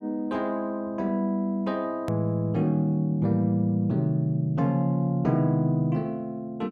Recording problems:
edit click; at 2 s

